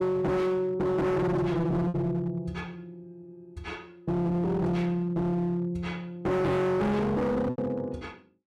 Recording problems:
distortion; hard clipping, signal-to-distortion ratio 6 dB
lost packets; 1.9% of the sound replaced, filled with repeated pitch periods

